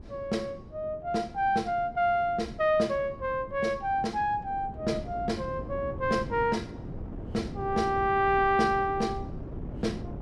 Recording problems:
wind on the microphone; below 290 Hz, SNR 13 dB

